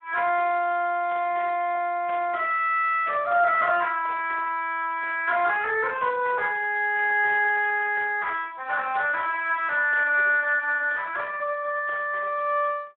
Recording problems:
phone line; 370 Hz to 3.5 kHz, Speex

